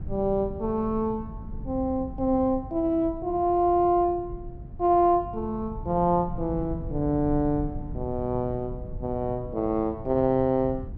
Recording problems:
low-frequency rumble; below 140 Hz, SNR 13 dB

